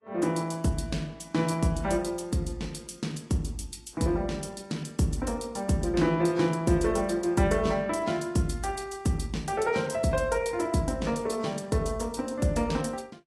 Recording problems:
lossy codec; AAC, log-spectral distance 3 dB, nothing above 11.3 kHz

